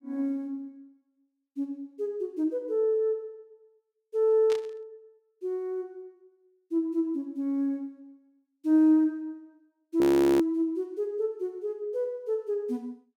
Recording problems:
burst of static; at 4.5 s; peak -8 dB vs average level
frozen audio; at 10 s

